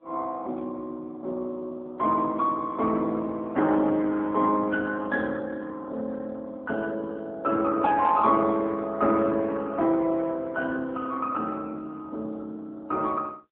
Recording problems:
telephone audio; 170 Hz to 3 kHz, AMR-NB

